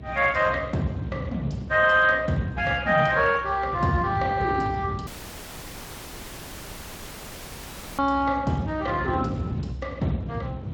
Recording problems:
lossy compression; Speex, log-spectral distance 3 dB
rumble; below 190 Hz, SNR 10 dB
audio cutting out; at 5 s for 3 s

